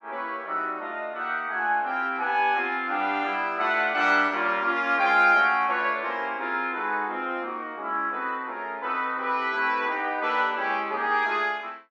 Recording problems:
none

